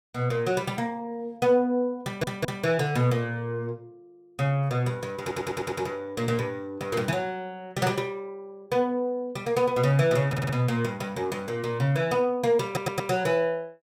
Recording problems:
audio stuttering; 4 times, first at 2 s

